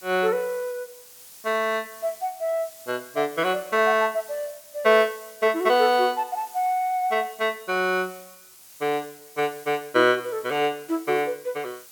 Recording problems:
background hiss; slope +1 dB per octave, SNR 20 dB

